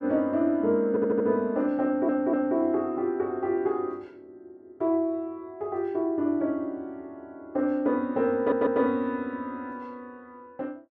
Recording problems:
stutter; at 1 s, at 2 s and at 8.5 s

